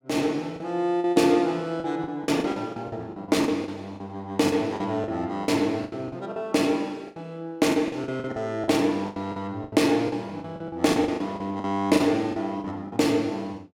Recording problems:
packet loss; 14% of the sound replaced, filled with the last packet

